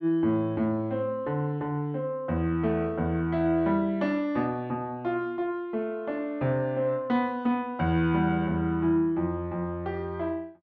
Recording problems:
none

